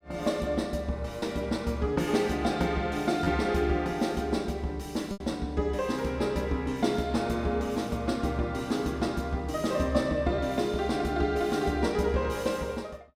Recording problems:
lost packets; 1.2% of the sound replaced, filled with repeated pitch periods

